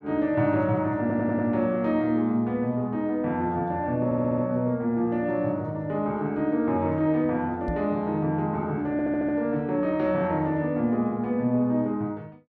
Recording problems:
stutter; at 1 s, at 4 s and at 9 s
microphone thump; at 7.5 s; peak -3 dB vs average level

